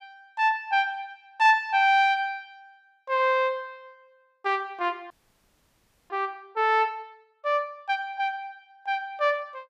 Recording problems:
audio freezing; at 5 s for 1 s

